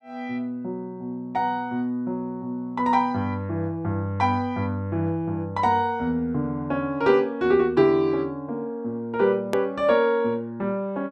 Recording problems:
click at an edit; at 9.5 s

